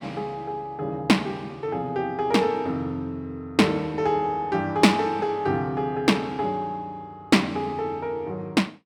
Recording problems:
none

